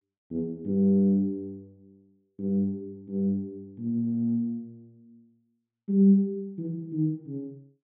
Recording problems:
low-pass filter; nothing above 4 kHz

